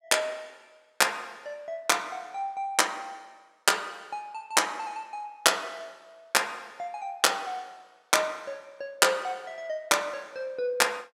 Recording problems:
none

